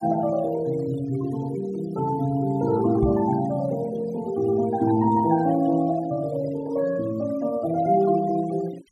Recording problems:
denoising artefacts; signal-to-artefact ratio 21 dB
microphone bump; at 3 s; peak +3 dB vs average level

